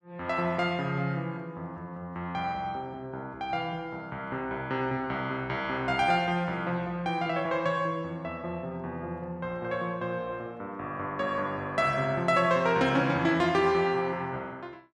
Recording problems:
none

